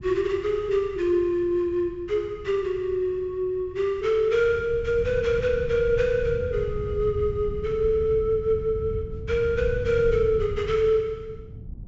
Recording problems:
treble cut off; nothing above 7.5 kHz
wind on the microphone; below 130 Hz, SNR 12 dB

